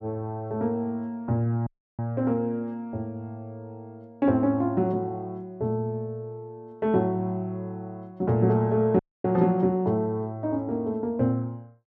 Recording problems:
dropout; at 1.5 s and at 9 s

